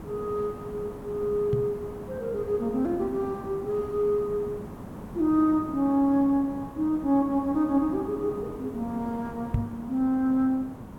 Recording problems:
hiss; SNR 13 dB
microphone bump; at 1.5 s and at 9.5 s; peak +4 dB vs average level

